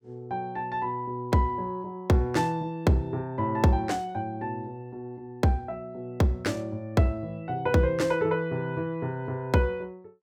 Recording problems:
none

